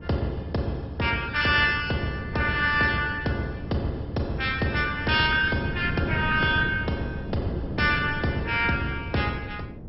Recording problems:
lossy compression; MP2, log-spectral distance 4 dB, nothing above 5.3 kHz
wind on the microphone; below 280 Hz, SNR 11 dB

